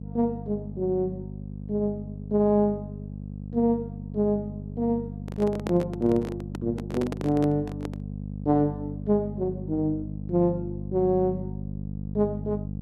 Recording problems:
hum; 50 Hz, harmonics up to 550 Hz, SNR 9 dB
handling noise; from 5 to 8 s; peak -2 dB vs average level

